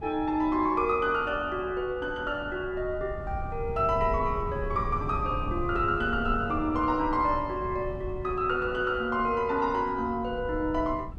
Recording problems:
wind on the microphone; below 130 Hz, SNR 11 dB

